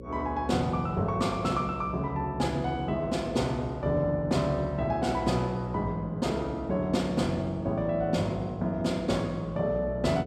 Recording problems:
mains hum; 60 Hz, harmonics up to 540 Hz, SNR 14 dB

